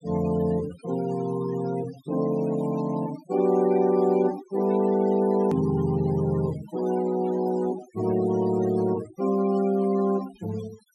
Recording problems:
denoising artefacts; signal-to-artefact ratio 17 dB
edit click; at 5.5 s

